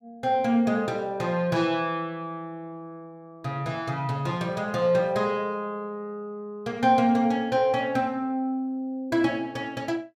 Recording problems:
none

